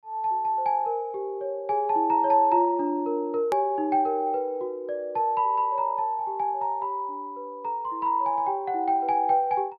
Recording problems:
low-pass filter; nothing above 5.2 kHz
hard cut with a click; at 3.5 s

